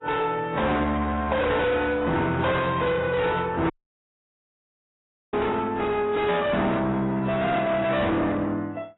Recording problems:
codec artefacts; AAC, then AAC, log-spectral distance 3 dB, nothing above 3.8 kHz
distortion; soft clipping, signal-to-distortion ratio 7 dB
dropout; at 3.5 s for 1.5 s

